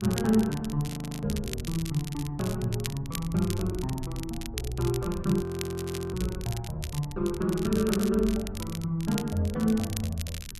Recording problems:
rumble; below 110 Hz, SNR 15 dB
crackling; vinyl, SNR 12 dB
frozen audio; at 1 s and at 5.5 s for 0.5 s

